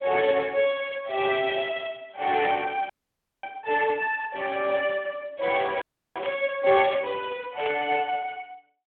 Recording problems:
phone line; 340 Hz to 3.3 kHz, Speex
burst of static; at 2.5 s, at 6 s and at 7.5 s; peak -3 dB vs average level
audio freezing; at 3 s for 0.5 s and at 6 s

